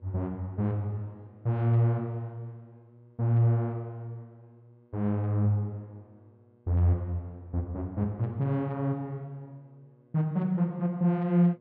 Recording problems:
hum; 60 Hz, harmonics up to 1.1 kHz, SNR 32 dB

